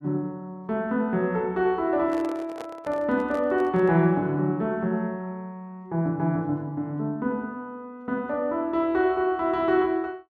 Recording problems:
handling noise; from 2 to 4 s; peak -8 dB vs average level

